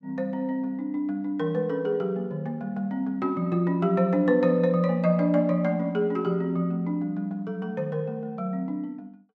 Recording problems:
none

